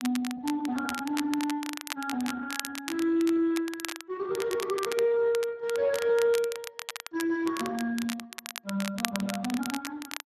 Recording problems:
lossy codec; Speex, log-spectral distance 3 dB
crackle; vinyl, SNR 9 dB

